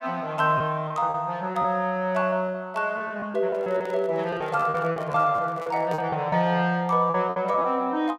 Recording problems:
lost packets; 10% of the sound replaced, filled with repeated pitch periods
microphone handling noise; from 3.5 to 6 s; peak -6 dB vs average level

